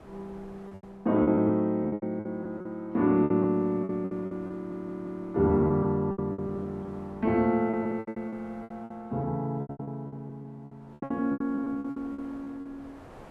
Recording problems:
wind on the microphone; below 940 Hz, SNR 25 dB
lost packets; 18% of the sound replaced, filled with repeated pitch periods
stutter; at 4.5 s

